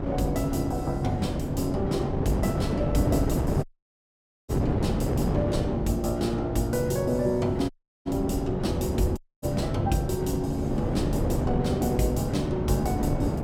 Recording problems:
wind noise; below 380 Hz, SNR 1 dB
audio cutting out; at 3.5 s for 1 s, at 7.5 s and at 9 s

